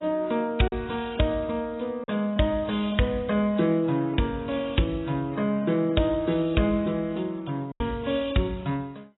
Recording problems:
codec artefacts; AAC, log-spectral distance 5 dB, nothing above 3.8 kHz
packet loss; 1.8% of the sound replaced, filled with silence

